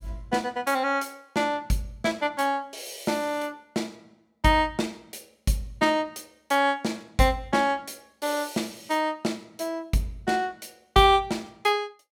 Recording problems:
none

